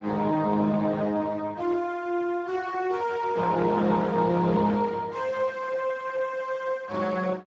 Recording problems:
codec artefacts; Speex, log-spectral distance 4 dB

